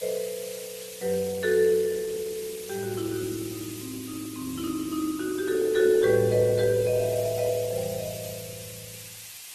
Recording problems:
lossy compression; Opus, log-spectral distance 8 dB, nothing above 11.6 kHz
background hiss; SNR 13 dB

